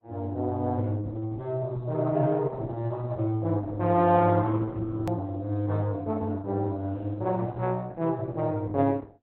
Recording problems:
lossy compression; Opus, log-spectral distance 2 dB, nothing above 16.1 kHz
edit click; at 5 s

